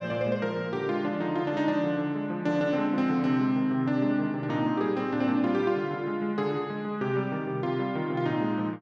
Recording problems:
none

